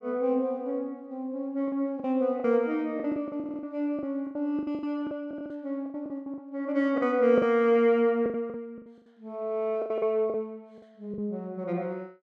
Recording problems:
packet loss; 13% of the sound replaced, filled with the last packet
stutter; at 3.5 s and at 5.5 s

